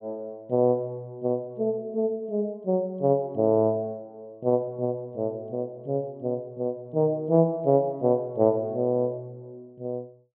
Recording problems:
low-pass filter; nothing above 4 kHz

